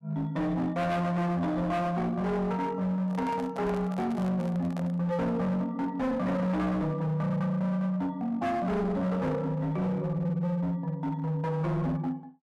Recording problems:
distorted audio; hard clipping, signal-to-distortion ratio 8 dB
handling noise; from 3 to 5 s; peak -8 dB vs average level

